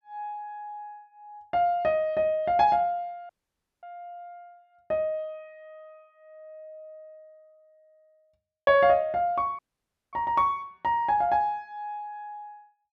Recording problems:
dropout; at 3.5 s for 0.5 s and at 9.5 s for 0.5 s

